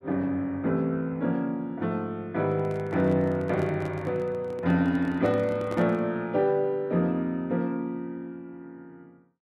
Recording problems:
handling noise; from 2.5 to 6 s; peak -5 dB vs average level

